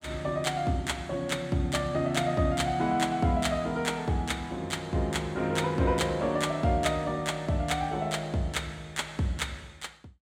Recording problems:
none

